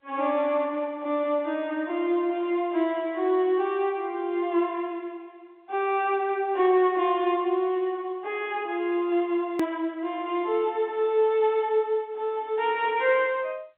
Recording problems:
phone line; 260 Hz to 3.7 kHz, G.711
edit click; at 9.5 s

